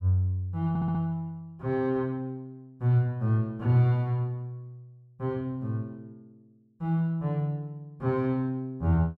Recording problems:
stutter; at 0.5 s

